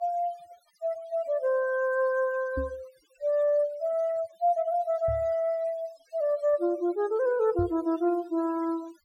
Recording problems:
denoising artefacts; signal-to-artefact ratio 25 dB
microphone thump; at 2.5 s, at 5 s and at 7.5 s; peak -2 dB vs average level

